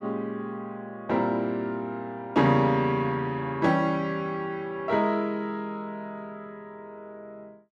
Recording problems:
none

